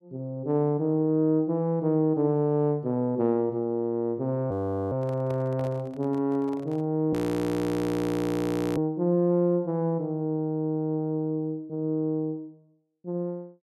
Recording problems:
audio freezing; at 4.5 s and at 7 s for 1.5 s
handling noise; from 5 to 7 s; peak -11 dB vs average level

